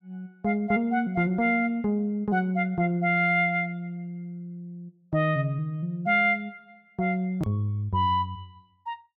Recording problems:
hard cut with a click; at 7.5 s

